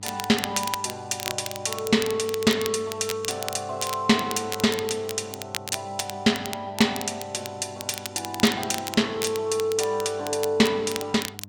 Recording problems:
electrical hum; 50 Hz, harmonics up to 600 Hz, SNR 20 dB
crackling; vinyl, SNR 9 dB

